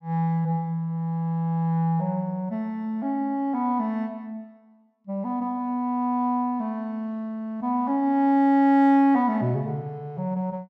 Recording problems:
none

